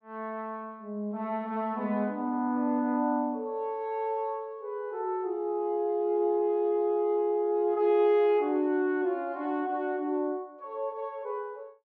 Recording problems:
none

